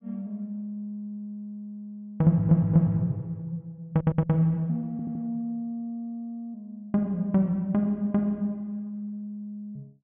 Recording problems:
low-pass filter; nothing above 3.5 kHz
stutter; at 2.5 s, at 4 s and at 5 s

